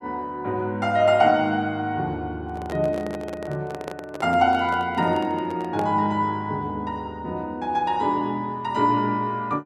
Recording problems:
handling noise; from 2.5 to 6 s; peak -5 dB vs average level

